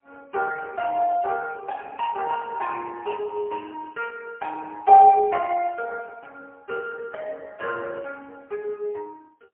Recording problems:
telephone audio; 280 Hz to 2.8 kHz, AMR-NB, then MP3

